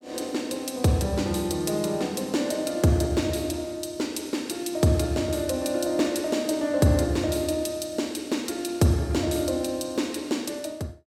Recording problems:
none

